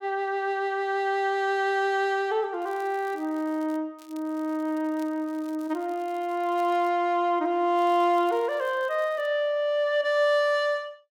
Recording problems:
crackling; from 2.5 to 4 s, from 4 to 7 s and from 8 to 9.5 s; loose cable, SNR 29 dB

